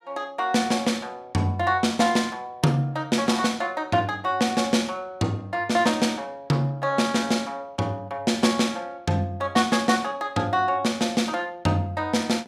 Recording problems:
none

